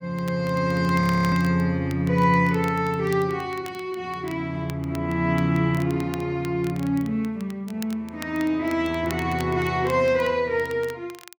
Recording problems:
crackling; vinyl, SNR 21 dB
frozen audio; at 1 s

